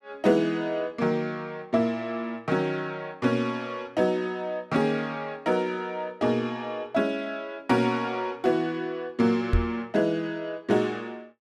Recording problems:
knock on the microphone; at 9.5 s; peak +6 dB vs average level

